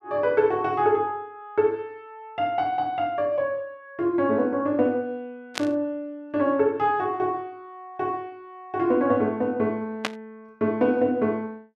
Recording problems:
static burst; at 5.5 s and at 10 s; peak +3 dB vs average level

